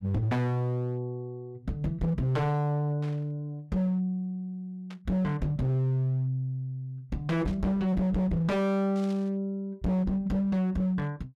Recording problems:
distorted audio; hard clipping, signal-to-distortion ratio 7 dB
static burst; 4 times, first at 3 s; peak -15 dB vs average level

